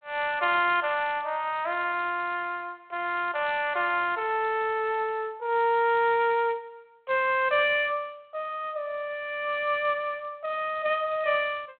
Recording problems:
telephone audio; 390 Hz to 3.5 kHz, G.726

